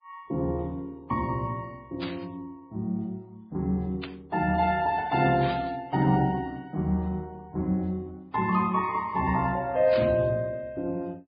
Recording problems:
codec artefacts; MP3, then Vorbis, log-spectral distance 2 dB
burst of static; 4 times, first at 2 s; peak -6 dB vs average level

